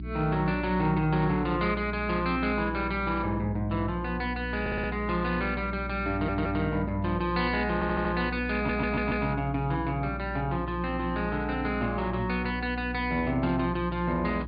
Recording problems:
low-pass filter; nothing above 4.8 kHz
electrical hum; 60 Hz, harmonics up to 360 Hz, SNR 9 dB
audio stuttering; 4 times, first at 4.5 s

